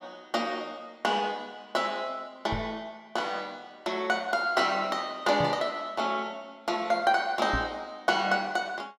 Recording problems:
microphone bump; at 2.5 s, at 5.5 s and at 7.5 s; peak 0 dB vs average level

